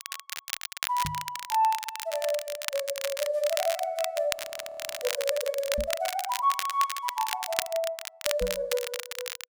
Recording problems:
crackle; vinyl, SNR 4 dB
microphone bump; at 1 s, at 6 s and at 8.5 s; peak -2 dB vs average level
frozen audio; at 4.5 s for 0.5 s

